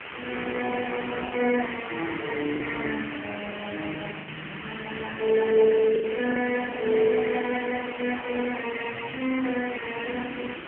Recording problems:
phone line; 220 Hz to 2.5 kHz, AMR-NB
hiss; SNR 11 dB
wind on the microphone; below 390 Hz, SNR 18 dB
packet loss; 3% of the sound replaced, filled with the last packet

